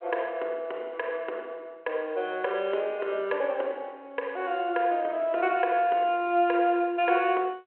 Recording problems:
telephone audio; 320 Hz to 3.2 kHz, G.726

